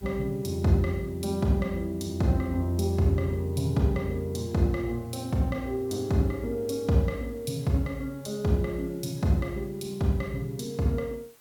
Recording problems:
background hiss; slope -2 dB per octave, SNR 27 dB

